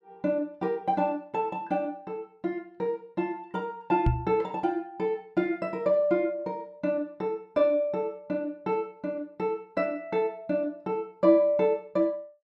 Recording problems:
microphone bump; at 4 s; peak +7 dB vs average level

